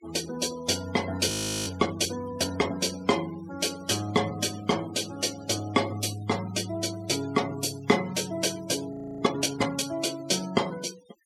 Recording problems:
noise reduction artefacts; signal-to-artefact ratio 15 dB
audio freezing; at 1.5 s and at 9 s

